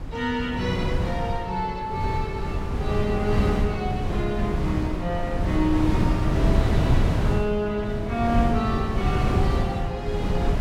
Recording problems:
wind noise; below 210 Hz, SNR -2 dB

